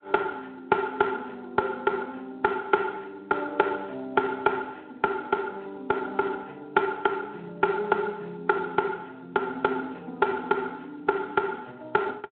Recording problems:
phone line; 280 Hz to 3.2 kHz, Speex

